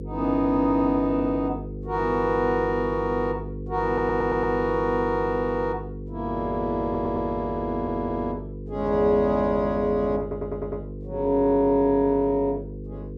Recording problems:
hum; 50 Hz, harmonics up to 500 Hz, SNR 11 dB
stutter; 4 times, first at 4 s

